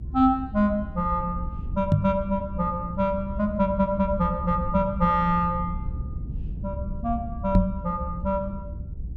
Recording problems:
low-frequency rumble; below 100 Hz, SNR 9 dB
knock on the microphone; at 2 s and at 7.5 s; peak +9 dB vs average level

